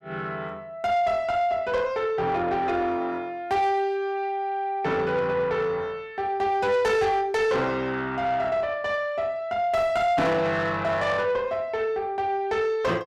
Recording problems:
distorted audio; soft clipping, signal-to-distortion ratio 11 dB

